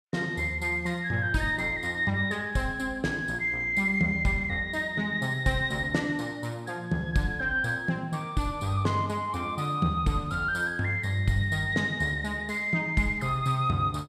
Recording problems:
none

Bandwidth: 14.5 kHz